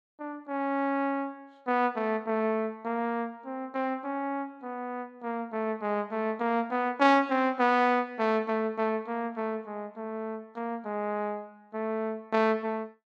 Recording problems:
none

